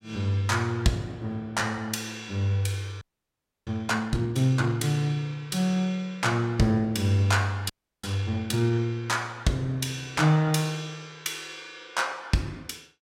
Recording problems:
frozen audio; at 3 s for 0.5 s and at 7.5 s

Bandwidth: 16 kHz